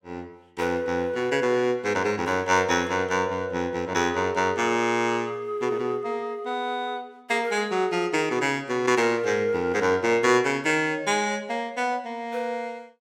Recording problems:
none

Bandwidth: 16.5 kHz